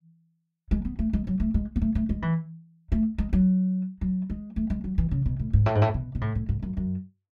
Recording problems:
none

